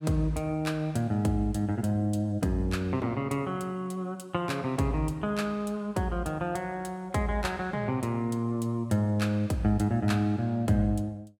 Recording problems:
none

